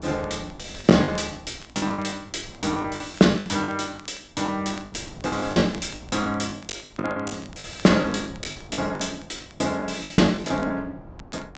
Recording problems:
treble cut off; nothing above 8 kHz
wind noise; below 420 Hz, SNR 20 dB
crackling; vinyl, SNR 25 dB
packet loss; 18% of the sound replaced, filled with the last packet

